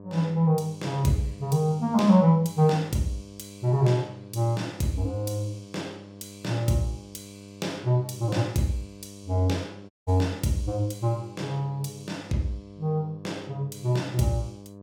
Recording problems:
hum; 50 Hz, harmonics up to 1.2 kHz, SNR 18 dB
dropout; at 10 s

